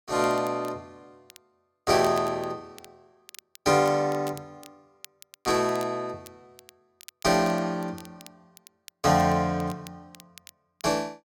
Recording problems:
crackling; vinyl, SNR 24 dB

